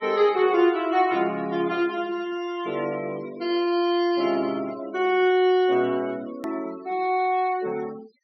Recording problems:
treble cut off; nothing above 6 kHz
noise reduction artefacts; signal-to-artefact ratio 22 dB
edit click; at 6.5 s

